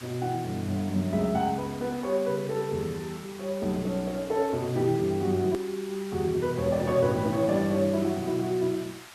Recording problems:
background hiss; SNR 17 dB
edit click; at 5.5 s

